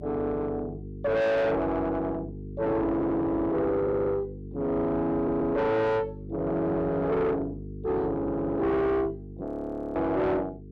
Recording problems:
distortion; soft clipping, signal-to-distortion ratio 5 dB
hum; 50 Hz, harmonics up to 450 Hz, SNR 14 dB
stutter; at 3 s, at 4 s and at 5 s
frozen audio; at 9.5 s for 0.5 s

